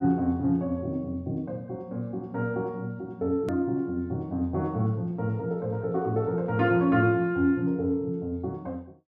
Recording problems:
hard cut with a click; at 3.5 s

